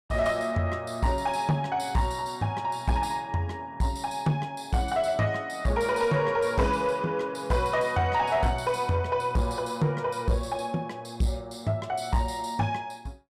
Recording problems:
distortion; soft clipping, signal-to-distortion ratio 11 dB

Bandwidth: 15.5 kHz